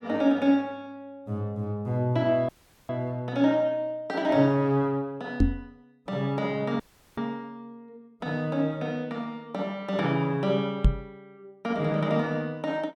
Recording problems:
audio cutting out; at 2.5 s and at 7 s
microphone thump; at 5.5 s and at 11 s; peak +9 dB vs average level

